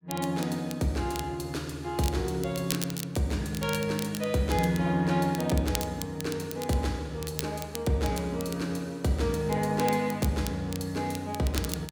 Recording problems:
crackling; vinyl, SNR 11 dB

